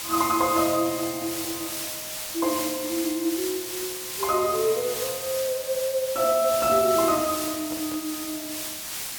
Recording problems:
background hiss; slope +2 dB per octave, SNR 5 dB
handling noise; from 6.5 to 8 s; peak -11 dB vs average level

